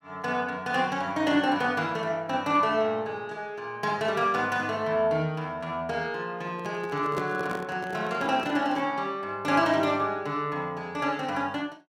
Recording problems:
microphone handling noise; from 6.5 to 9 s; peak -2 dB vs average level

